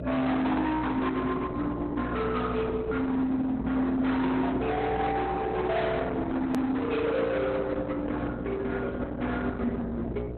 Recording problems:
codec artefacts; Opus, log-spectral distance 3 dB, nothing above 14.1 kHz
distortion; hard clipping, signal-to-distortion ratio 7 dB
electrical hum; 60 Hz, harmonics up to 780 Hz, SNR 10 dB
hard cut with a click; at 6.5 s

